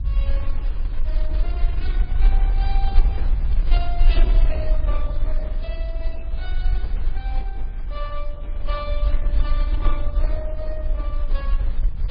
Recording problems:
lossy compression; Opus, then MP3, log-spectral distance 2 dB, nothing above 4.6 kHz
rumble; below 42 Hz, strongest tone 20 Hz, SNR -12 dB

